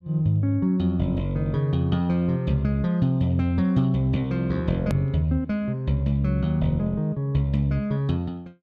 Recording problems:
edit click; at 5 s

